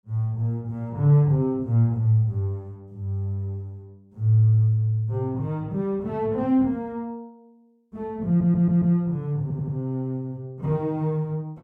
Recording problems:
stutter; at 8.5 s and at 9.5 s

